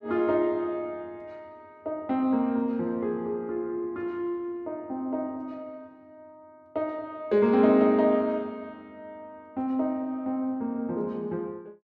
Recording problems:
none

